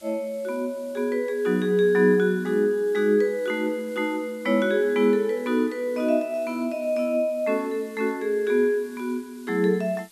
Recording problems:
background hiss; SNR 27 dB

